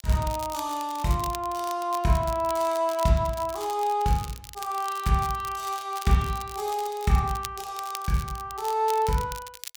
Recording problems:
crackle; vinyl, SNR 15 dB

